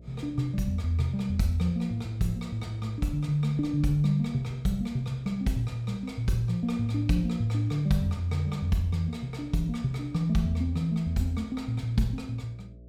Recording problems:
hum; 60 Hz, harmonics up to 660 Hz, SNR 22 dB

